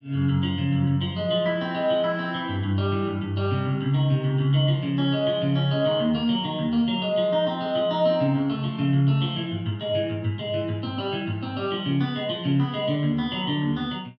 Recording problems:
none

